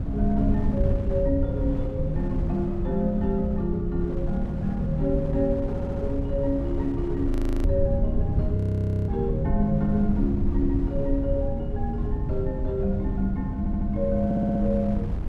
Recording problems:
low-frequency rumble; below 110 Hz, SNR 1 dB
wind on the microphone; below 490 Hz, SNR 13 dB
stutter; at 5.5 s and at 14 s
audio freezing; at 7.5 s and at 8.5 s for 0.5 s

